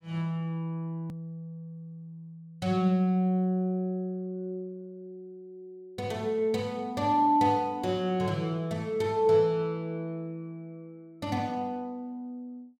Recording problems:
click at an edit; at 1 s

